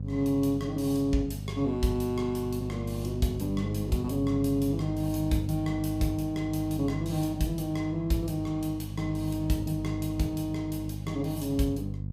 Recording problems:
hum; 50 Hz, harmonics up to 300 Hz, SNR 6 dB

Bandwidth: 15.5 kHz